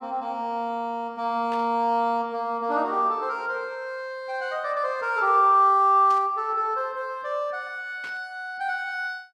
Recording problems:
burst of static; at 1.5 s, at 6 s and at 8 s; peak -13 dB vs average level

